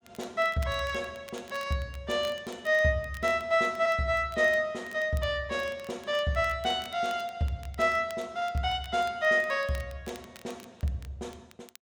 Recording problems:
crackle; vinyl, SNR 24 dB

